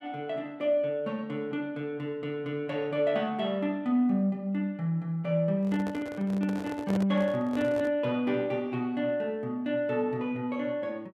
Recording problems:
microphone handling noise; from 5.5 to 8 s; peak -1 dB vs average level

